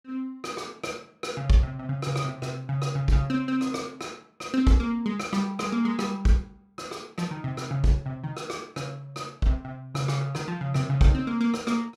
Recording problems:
none

